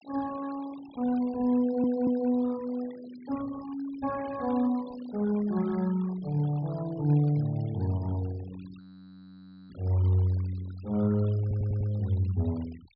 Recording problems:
low-pass filter; nothing above 5.5 kHz
noise reduction artefacts; signal-to-artefact ratio 21 dB
audio stuttering; at 1.5 s and at 11 s
burst of static; at 4.5 s; peak -22 dB vs average level
frozen audio; at 9 s for 1 s

